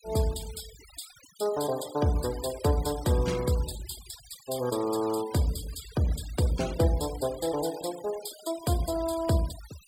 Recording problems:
denoising artefacts; signal-to-artefact ratio 15 dB

